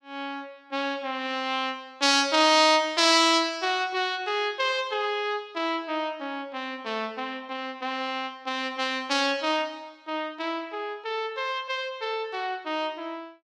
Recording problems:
none

